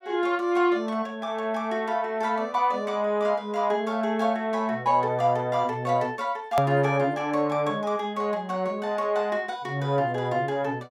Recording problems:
click at an edit; at 6.5 s

